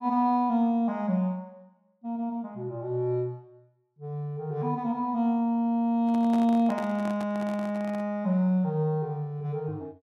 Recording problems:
handling noise; from 6 to 8 s; peak -7 dB vs average level

